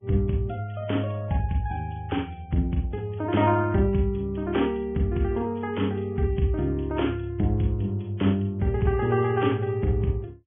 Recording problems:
treble missing; nothing above 3.4 kHz
codec artefacts; Vorbis, log-spectral distance 3 dB

